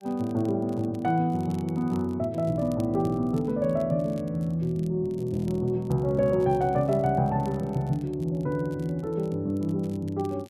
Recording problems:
crackling; vinyl, SNR 29 dB

